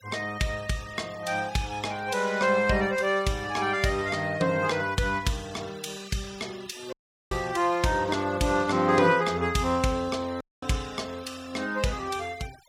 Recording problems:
noise reduction artefacts; signal-to-artefact ratio 20 dB
audio cutting out; at 7 s and at 10 s

